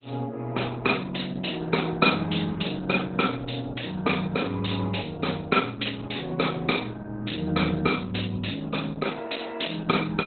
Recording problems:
codec artefacts; Opus, log-spectral distance 10 dB, nothing above 4.1 kHz

